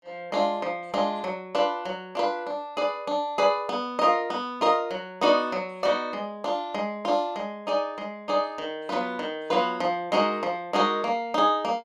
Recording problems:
none

